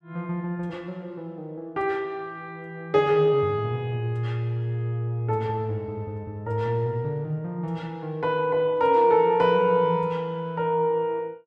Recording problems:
none

